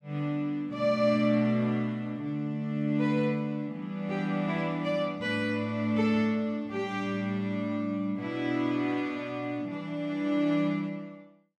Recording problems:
none

